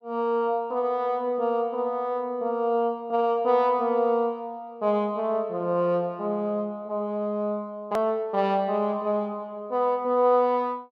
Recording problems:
edit click; at 8 s

